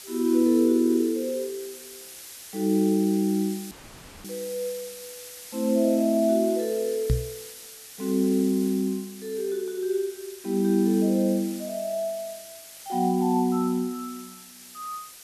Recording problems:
background hiss; SNR 16 dB
audio cutting out; at 3.5 s for 0.5 s
microphone bump; at 7 s; peak +4 dB vs average level

